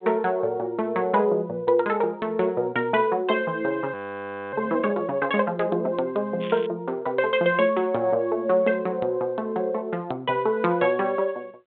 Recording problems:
telephone audio; 220 Hz to 3.6 kHz, G.726
audio freezing; at 4 s for 0.5 s
crackling; at 6.5 s; loose cable, SNR 18 dB

